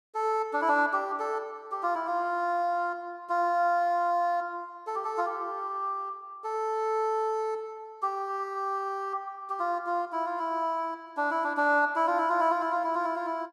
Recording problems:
none

